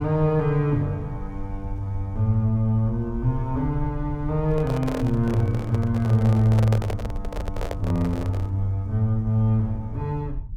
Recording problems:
rumble; below 70 Hz, SNR 13 dB
microphone handling noise; from 4.5 to 8.5 s; peak -2 dB vs average level

